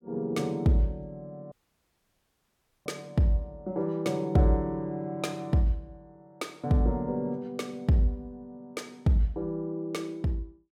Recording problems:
dropout; at 1.5 s for 1.5 s

